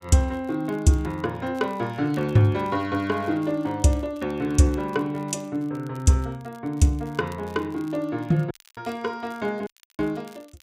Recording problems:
crackle; vinyl, SNR 29 dB
audio cutting out; at 8.5 s and at 9.5 s

